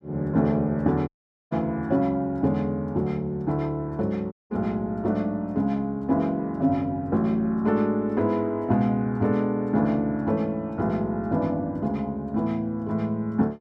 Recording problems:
dropout; at 1 s and at 4.5 s

